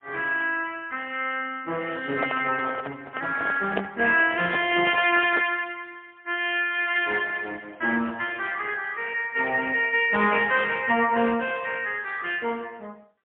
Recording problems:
telephone audio; 190 Hz to 3.4 kHz, AMR-NB, then MP3
handling noise; from 2 to 5.5 s; peak -1 dB vs average level

